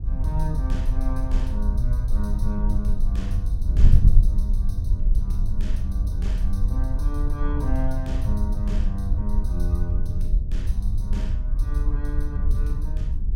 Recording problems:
wind noise; below 62 Hz, SNR -8 dB

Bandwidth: 16 kHz